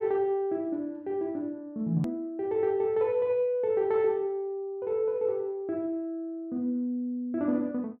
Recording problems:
click at an edit; at 2 s

